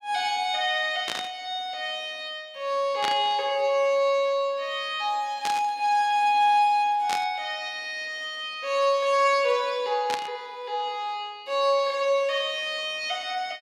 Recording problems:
static burst; 5 times, first at 1 s; peak -1 dB vs average level

